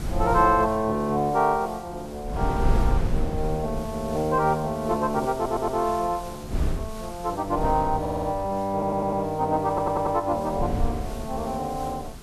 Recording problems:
background hiss; slope -2 dB per octave, SNR 20 dB
wind on the microphone; below 120 Hz, SNR 6 dB
audio stuttering; 4 times, first at 5.5 s

